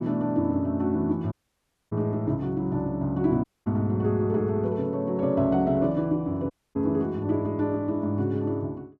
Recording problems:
dropout; at 1.5 s for 0.5 s, at 3.5 s and at 6.5 s

